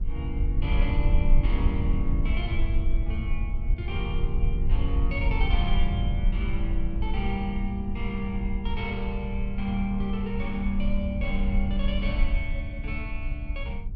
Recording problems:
rumble; below 62 Hz, SNR -4 dB

